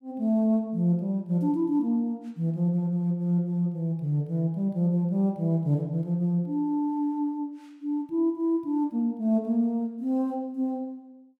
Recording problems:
none

